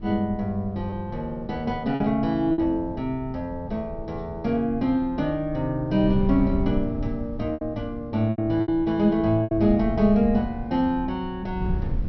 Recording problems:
treble cut off; nothing above 5.8 kHz
wind on the microphone; below 120 Hz, SNR 11 dB
lost packets; 4% of the sound replaced, filled with repeated pitch periods

